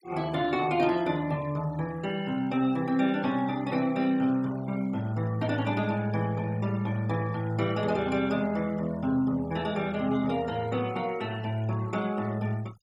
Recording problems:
noise reduction artefacts; signal-to-artefact ratio 21 dB

